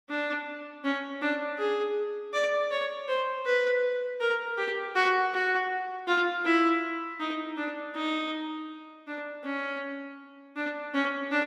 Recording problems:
none

